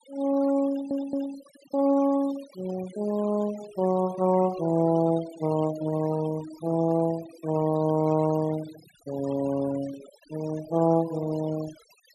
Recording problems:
noise reduction artefacts; signal-to-artefact ratio 18 dB
stutter; at 0.5 s

